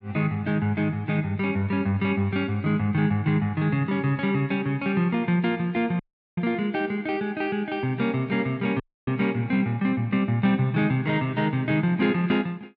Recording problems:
dropout; at 6 s and at 9 s

